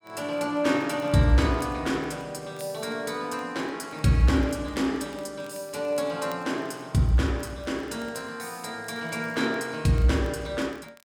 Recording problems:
crackle; vinyl, SNR 30 dB

